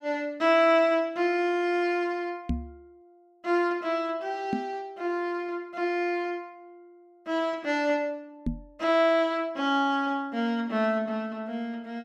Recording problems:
microphone thump; at 2.5 s, at 4.5 s and at 8.5 s; peak +2 dB vs average level

